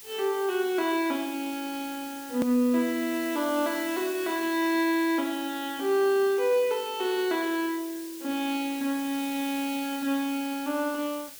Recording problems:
hiss; SNR 14 dB
hard cut with a click; at 2.5 s

